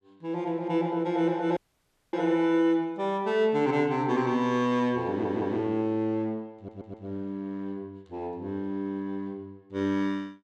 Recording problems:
dropout; at 1.5 s for 0.5 s
audio stuttering; at 5 s and at 6.5 s

